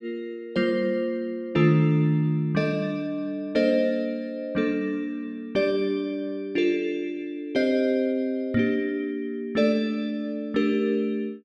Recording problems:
microphone bump; at 8.5 s; peak -2 dB vs average level

